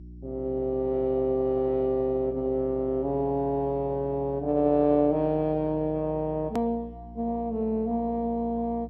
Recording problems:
codec artefacts; MP2, log-spectral distance 2 dB, nothing above 13.1 kHz
hum; 60 Hz, harmonics up to 360 Hz, SNR 18 dB
click at an edit; at 6.5 s

